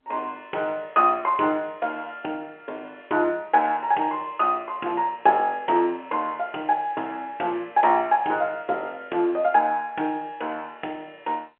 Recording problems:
phone line; 300 Hz to 3.2 kHz, G.711

